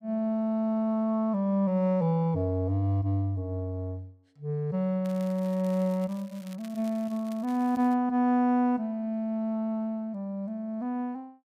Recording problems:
crackling; from 5 to 8 s; loose cable, SNR 25 dB

